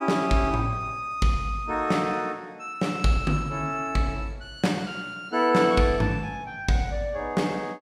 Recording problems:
none

